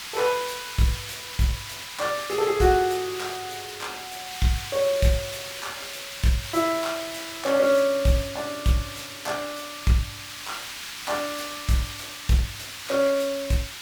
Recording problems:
background hiss; SNR 9 dB

